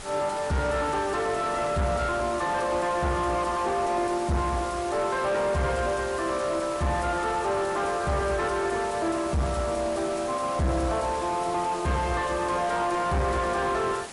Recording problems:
lossy compression; MP3, log-spectral distance 4 dB, nothing above 11 kHz
distorted audio; soft clipping, signal-to-distortion ratio 3 dB
hiss; SNR 5 dB

